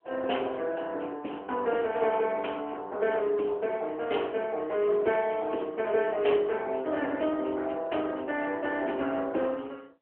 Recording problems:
telephone audio; 260 Hz to 3.2 kHz, AMR-NB

